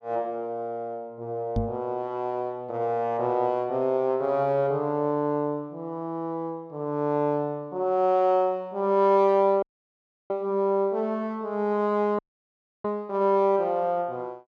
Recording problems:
knock on the microphone; at 1.5 s; peak +2 dB vs average level
dropout; at 9.5 s for 0.5 s and at 12 s for 0.5 s

